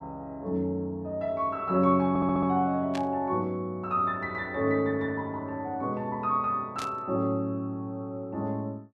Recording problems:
stutter; at 2 s
burst of static; at 3 s and at 7 s; peak -6 dB vs average level

